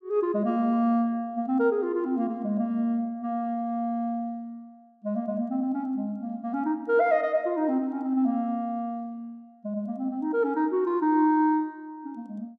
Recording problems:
none

